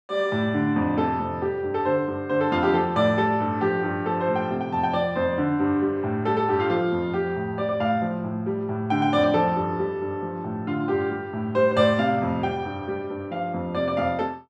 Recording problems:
none

